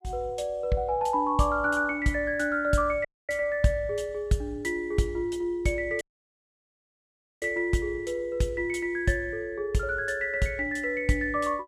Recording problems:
audio cutting out; at 3 s and at 6 s for 1.5 s

